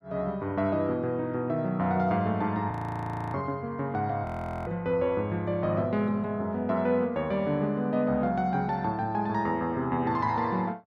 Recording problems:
audio freezing; at 2.5 s for 0.5 s and at 4.5 s

